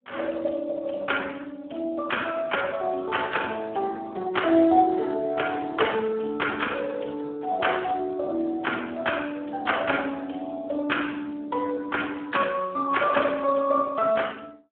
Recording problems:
phone line; 220 Hz to 3.3 kHz, Speex

